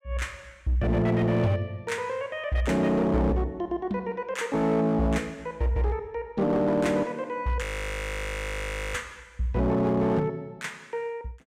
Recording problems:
distortion; hard clipping, signal-to-distortion ratio 12 dB
audio freezing; at 7.5 s for 1.5 s

